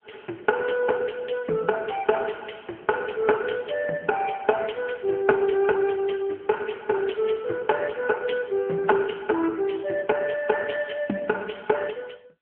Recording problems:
phone line; 220 Hz to 3.3 kHz, AMR-NB

